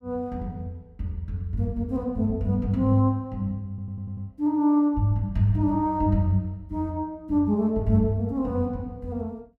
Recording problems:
audio stuttering; at 3.5 s

